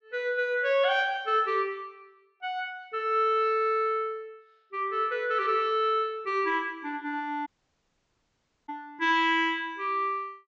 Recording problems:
treble cut off; nothing above 8 kHz
audio cutting out; at 7.5 s for 1 s

